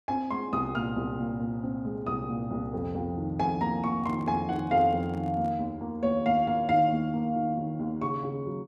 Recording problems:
handling noise; from 4 to 5.5 s; peak -9 dB vs average level

